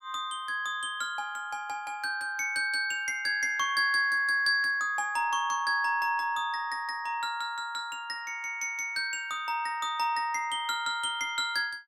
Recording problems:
none

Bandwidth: 16 kHz